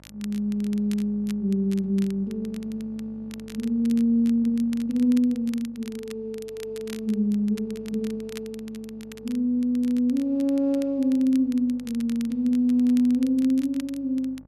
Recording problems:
hum; 50 Hz, harmonics up to 1.2 kHz, SNR 26 dB
crackling; vinyl, SNR 23 dB

